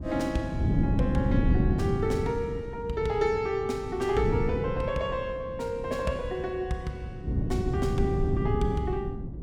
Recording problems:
wind on the microphone; below 200 Hz, SNR 0 dB

